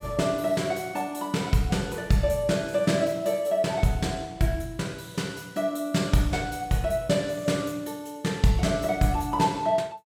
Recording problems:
none

